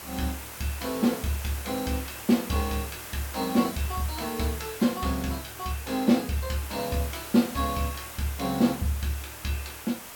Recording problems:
background hiss; slope -2 dB per octave, SNR 10 dB

